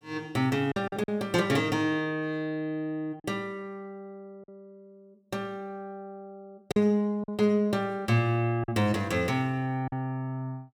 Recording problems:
packet loss; 4% of the sound replaced, filled with silence

